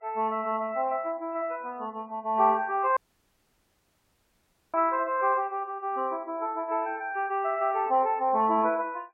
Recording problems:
codec artefacts; MP3, log-spectral distance 2 dB, nothing above 2.7 kHz
audio cutting out; at 3 s for 2 s

